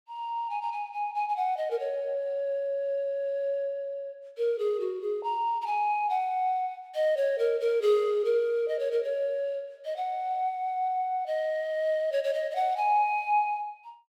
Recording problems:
none

